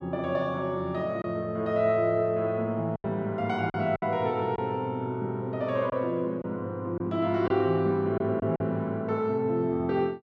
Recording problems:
lost packets; 4% of the sound replaced, filled with silence

